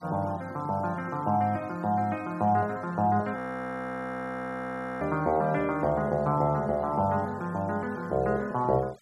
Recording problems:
denoising artefacts; signal-to-artefact ratio 27 dB
audio freezing; at 3.5 s for 1.5 s

